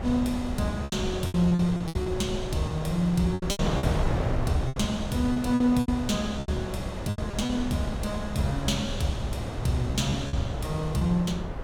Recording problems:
wind noise; below 570 Hz, SNR 6 dB
lost packets; 10% of the sound replaced, filled with repeated pitch periods

